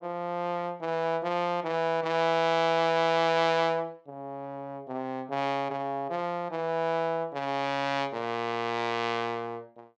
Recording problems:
none

